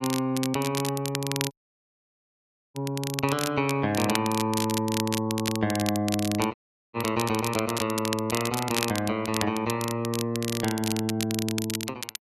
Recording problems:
crackle; vinyl, SNR 5 dB
dropout; at 1.5 s for 1 s and at 6.5 s

